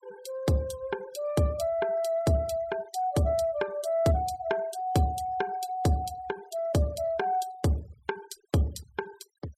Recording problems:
denoising artefacts; signal-to-artefact ratio 24 dB

